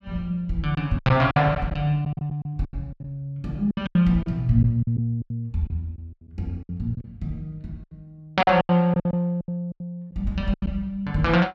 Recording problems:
lost packets; 13% of the sound replaced, filled with silence

